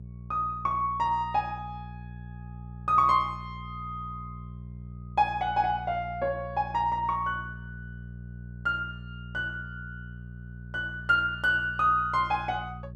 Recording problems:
electrical hum; 60 Hz, harmonics up to 420 Hz, SNR 14 dB

